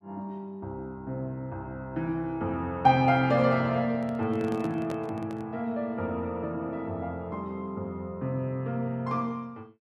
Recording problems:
microphone handling noise; from 4 to 5.5 s; peak -3 dB vs average level

